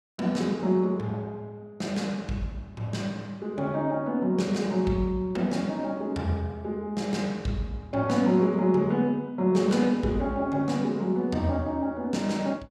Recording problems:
none

